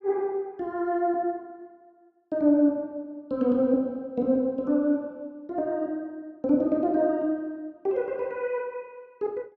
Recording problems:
none

